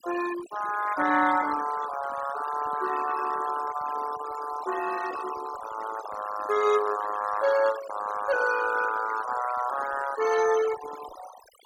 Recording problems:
noise reduction artefacts; signal-to-artefact ratio 12 dB

